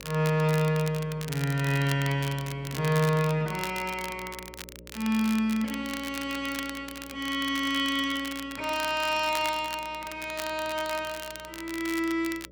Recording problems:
hum; 60 Hz, harmonics up to 600 Hz, SNR 22 dB
crackle; vinyl, SNR 12 dB

